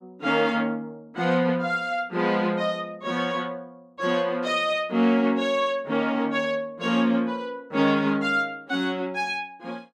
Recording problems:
none

